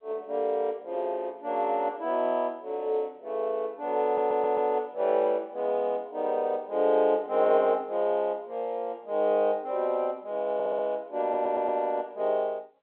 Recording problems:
telephone audio; 300 Hz to 3.7 kHz, G.711
stutter; at 4 s and at 11 s

